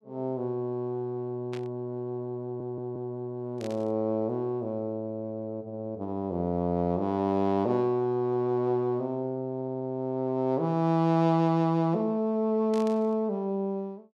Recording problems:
static burst; at 1.5 s, at 3.5 s and at 13 s; peak -11 dB vs average level
stutter; at 2.5 s and at 9.5 s

